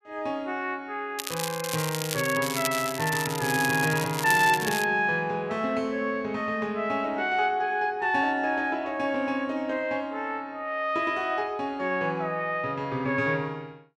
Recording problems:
crackle; from 1 to 5 s; loose cable, SNR 6 dB

